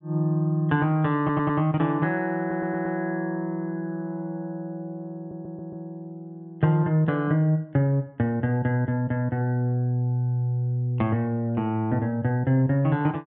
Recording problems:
audio stuttering; at 1 s, at 2.5 s and at 5 s

